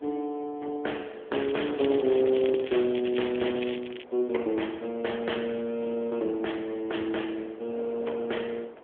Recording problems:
telephone audio; 280 Hz to 3.5 kHz, AMR-NB
wind noise; below 790 Hz, SNR 15 dB
crackling; from 1.5 to 4 s; loose cable, SNR 12 dB

